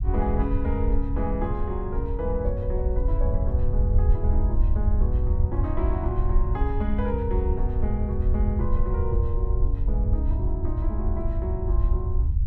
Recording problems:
rumble; below 76 Hz, SNR -5 dB

